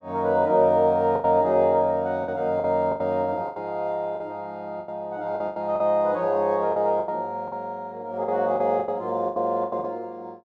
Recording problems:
packet loss; 11% of the sound replaced, filled with the last packet

